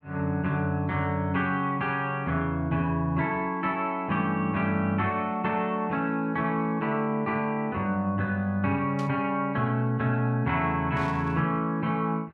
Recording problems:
burst of static; at 9 s and at 11 s; peak -13 dB vs average level

